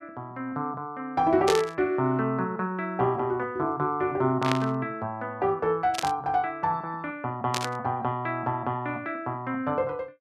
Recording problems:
static burst; 4 times, first at 1.5 s; peak +3 dB vs average level

